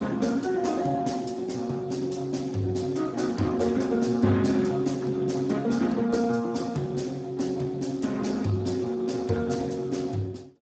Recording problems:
codec artefacts; Speex, log-spectral distance 4 dB, nothing above 7.6 kHz

